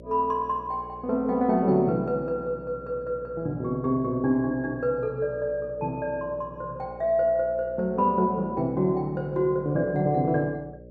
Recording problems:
hum; 60 Hz, harmonics up to 600 Hz, SNR 19 dB

